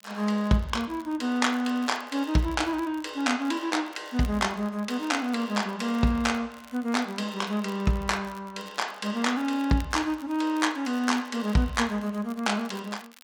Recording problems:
crackling; vinyl, SNR 24 dB

